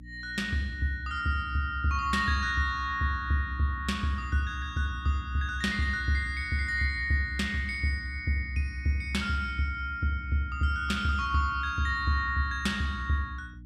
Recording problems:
hum; 60 Hz, harmonics up to 300 Hz, SNR 18 dB

